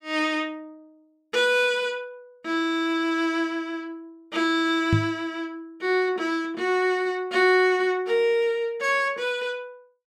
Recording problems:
microphone thump; at 5 s; peak +5 dB vs average level

